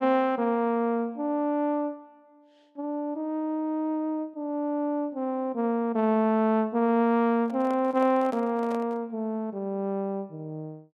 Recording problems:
microphone handling noise; from 7.5 to 9 s; peak -9 dB vs average level

